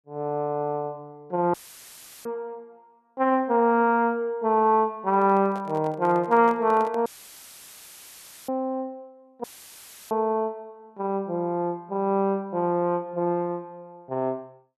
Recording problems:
audio cutting out; at 1.5 s for 0.5 s, at 7 s for 1.5 s and at 9.5 s for 0.5 s; filled with static
handling noise; from 5 to 7 s; peak -10 dB vs average level

